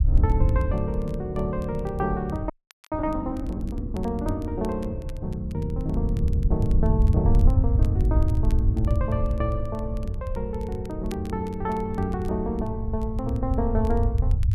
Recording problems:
rumble; below 88 Hz, SNR -2 dB
crackle; vinyl, SNR 25 dB
frozen audio; at 2.5 s

